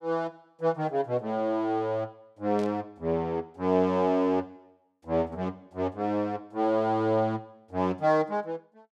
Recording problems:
burst of static; at 2.5 s; peak -15 dB vs average level

